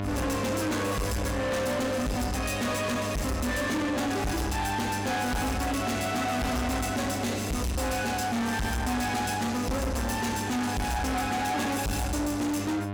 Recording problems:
distortion; soft clipping, signal-to-distortion ratio 6 dB
hum; 50 Hz, harmonics up to 2.1 kHz, SNR 6 dB

